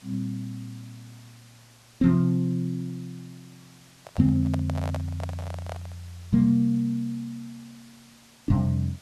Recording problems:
hiss; slope -1 dB per octave, SNR 27 dB
handling noise; from 4 to 6 s; peak -5 dB vs average level

